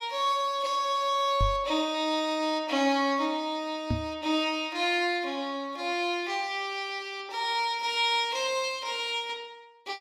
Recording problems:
knock on the microphone; at 1.5 s and at 4 s; peak +2 dB vs average level

